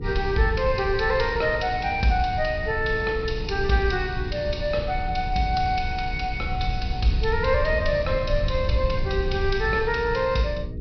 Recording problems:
low-pass filter; nothing above 5.5 kHz
hum; 60 Hz, harmonics up to 480 Hz, SNR 14 dB
low-frequency rumble; below 94 Hz, SNR 7 dB

